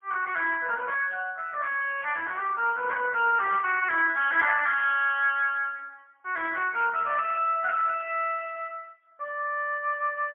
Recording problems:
phone line; 390 Hz to 3.3 kHz, AMR-NB, then MP3

